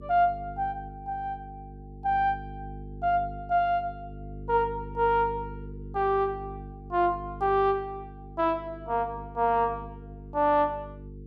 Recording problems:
mains hum; 50 Hz, harmonics up to 450 Hz, SNR 15 dB

